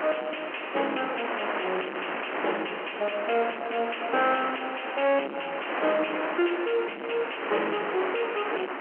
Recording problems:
phone line; 280 Hz to 3.1 kHz, G.711
distortion; soft clipping, signal-to-distortion ratio 6 dB
wind on the microphone; below 2 kHz, SNR 4 dB

